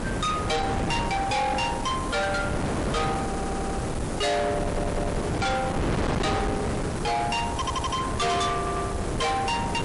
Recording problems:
lossy codec; MP3, log-spectral distance 8 dB, nothing above 11 kHz
distortion; soft clipping, signal-to-distortion ratio 6 dB
background hiss; slope +2 dB per octave, SNR 15 dB
wind on the microphone; below 910 Hz, SNR 2 dB
stutter; 4 times, first at 3.5 s

